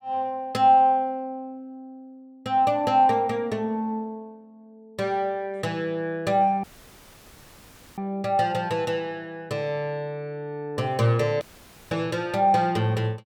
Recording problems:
dropout; at 6.5 s for 1.5 s and at 11 s for 0.5 s

